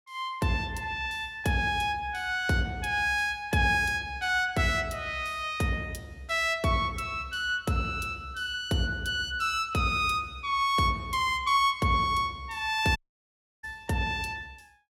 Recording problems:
audio cutting out; at 13 s for 0.5 s

